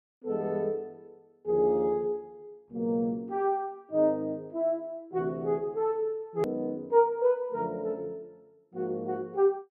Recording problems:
hard cut with a click; at 6.5 s

